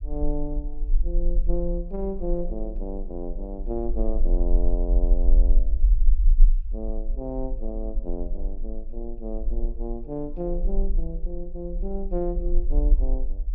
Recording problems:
low-frequency rumble; below 40 Hz, strongest tone 24 Hz, SNR -5 dB

